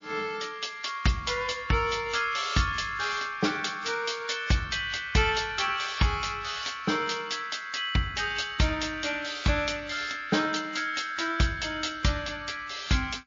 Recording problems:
lossy compression; MP3, log-spectral distance 5 dB, nothing above 6.9 kHz

